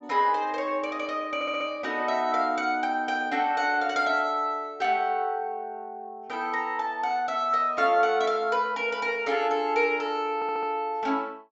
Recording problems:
low-pass filter; nothing above 7.8 kHz
stutter; at 1.5 s and at 10 s

